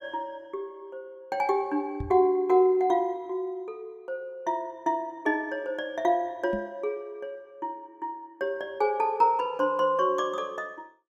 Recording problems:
microphone bump; at 2 s and at 6.5 s; peak -3 dB vs average level

